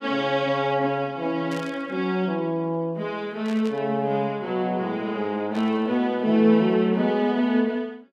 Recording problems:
burst of static; at 1.5 s, at 3.5 s and at 5.5 s; peak -13 dB vs average level

